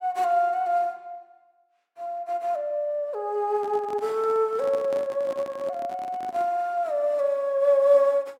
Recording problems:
handling noise; from 3.5 to 6.5 s; peak -11 dB vs average level

